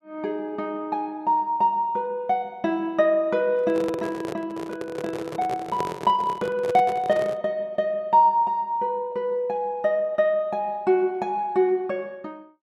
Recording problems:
handling noise; from 3.5 to 7.5 s; peak -1 dB vs average level

